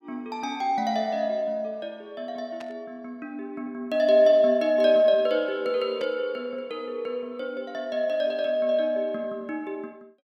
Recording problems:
static burst; at 2.5 s and at 6 s; peak -13 dB vs average level

